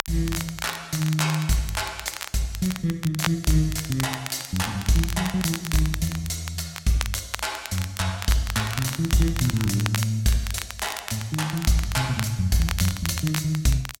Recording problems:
crackle; vinyl, SNR 9 dB

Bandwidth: 16 kHz